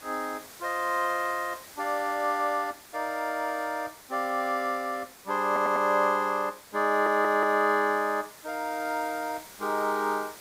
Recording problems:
hiss; slope -2 dB per octave, SNR 19 dB
stutter; at 5.5 s and at 7 s

